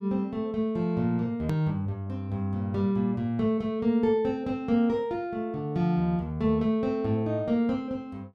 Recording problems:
edit click; at 1.5 s

